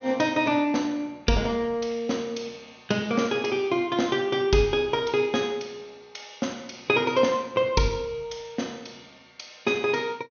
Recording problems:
treble cut off; nothing above 6.5 kHz

